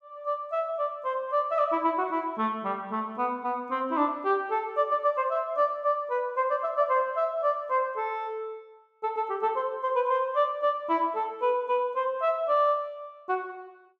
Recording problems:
none

